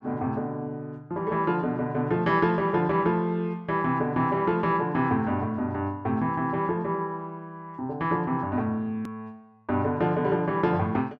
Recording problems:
hard cut with a click; at 9 s

